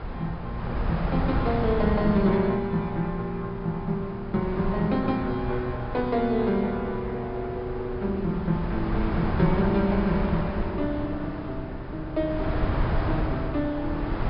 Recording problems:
low-pass filter; nothing above 5.5 kHz
wind noise; below 400 Hz, SNR 5 dB

